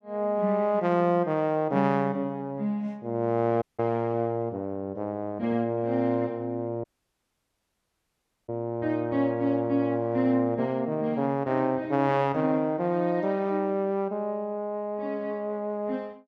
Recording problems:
dropout; at 3.5 s and at 7 s for 1.5 s

